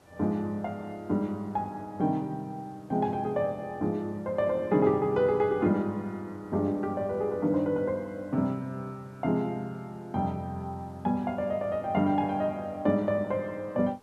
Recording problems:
background hiss; slope -6 dB per octave, SNR 29 dB

